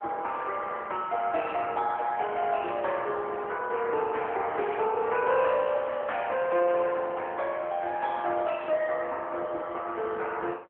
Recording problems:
telephone audio; 320 Hz to 3.6 kHz, AMR-NB

